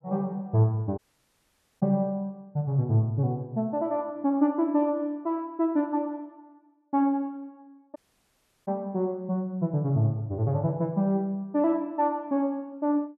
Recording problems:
dropout; at 1 s for 1 s and at 8 s for 0.5 s

